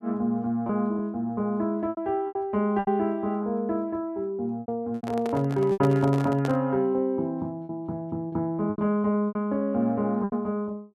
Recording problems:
packet loss; 8% of the sound replaced, filled with repeated pitch periods
handling noise; from 5 to 6.5 s; peak -3 dB vs average level

